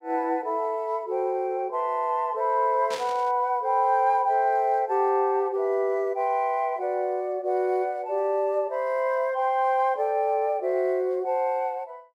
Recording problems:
static burst; at 3 s; peak -6 dB vs average level

